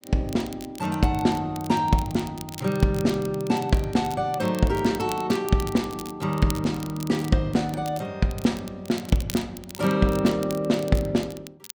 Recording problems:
crackle; vinyl, SNR 17 dB

